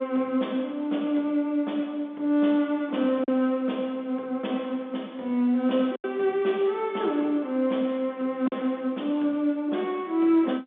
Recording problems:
telephone audio; 220 Hz to 3.6 kHz, G.711
lost packets; 1.5% of the sound replaced, filled with silence

